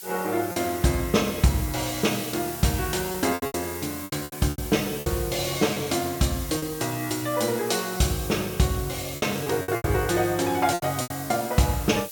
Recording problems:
hiss; slope +3 dB per octave, SNR 10 dB
packet loss; 8% of the sound replaced, filled with repeated pitch periods

